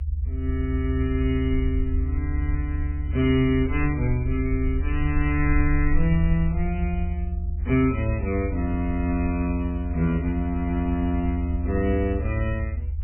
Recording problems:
lossy codec; MP3, log-spectral distance 2 dB, nothing above 2.5 kHz
rumble; below 76 Hz, SNR 2 dB

